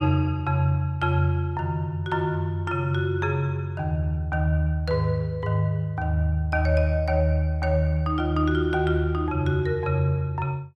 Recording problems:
none

